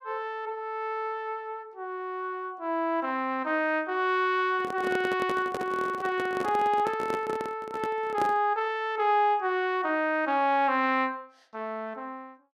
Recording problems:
handling noise; from 4.5 to 8.5 s; peak -1 dB vs average level

